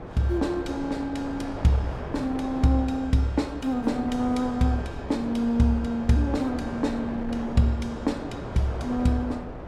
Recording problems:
wind noise; below 710 Hz, SNR 10 dB

